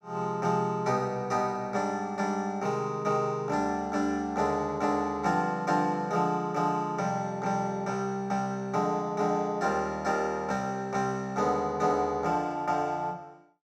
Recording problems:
none

